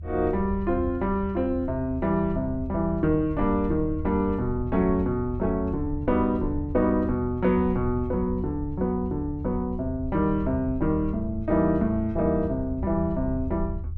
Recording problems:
low-frequency rumble; below 82 Hz, SNR 9 dB

